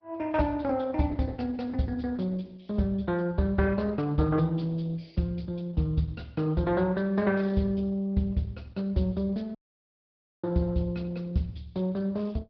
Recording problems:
treble missing; nothing above 5.5 kHz
lossy compression; Opus, log-spectral distance 3 dB
dropout; at 9.5 s for 1 s

